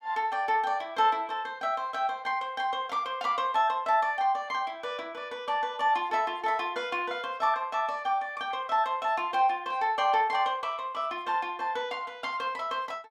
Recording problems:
none

